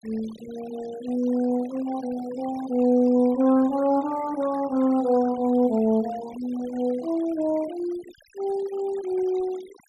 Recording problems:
denoising artefacts; signal-to-artefact ratio 20 dB

